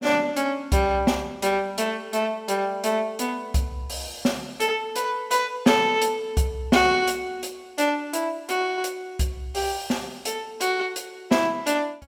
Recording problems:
none

